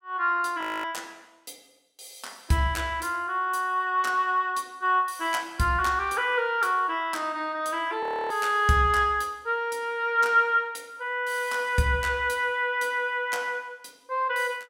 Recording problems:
frozen audio; at 0.5 s and at 8 s

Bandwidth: 17 kHz